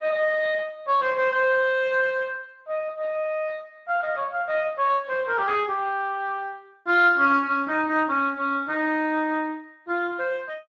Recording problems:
codec artefacts; Speex, log-spectral distance 3 dB

